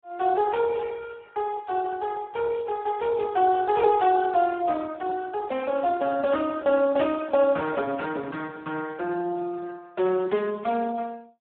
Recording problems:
phone line; 260 Hz to 2.2 kHz, Speex

